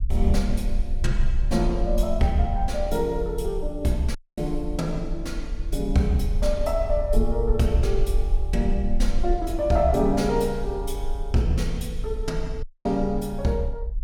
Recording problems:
low-frequency rumble; below 46 Hz, strongest tone 22 Hz, SNR 4 dB
audio cutting out; at 4 s and at 13 s

